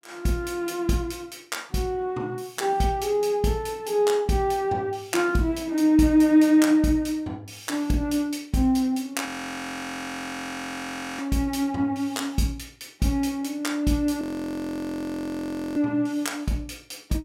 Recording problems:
frozen audio; at 9.5 s for 2 s and at 14 s for 1.5 s

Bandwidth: 16 kHz